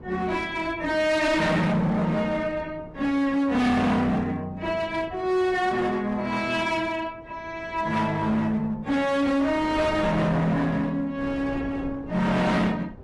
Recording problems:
lossy compression; AAC, then AAC, log-spectral distance 2 dB, nothing above 11.3 kHz
distorted audio; hard clipping, uneven, signal-to-distortion ratio 7 dB
wind noise; below 540 Hz, SNR 17 dB

